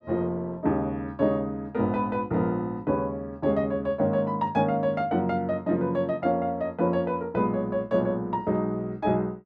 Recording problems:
none

